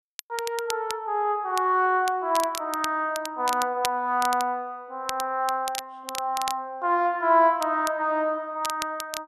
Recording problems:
crackle; vinyl, SNR 11 dB

